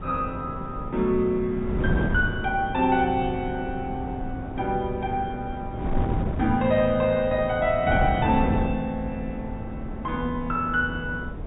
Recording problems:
treble missing; nothing above 4 kHz
wind on the microphone; below 240 Hz, SNR 6 dB

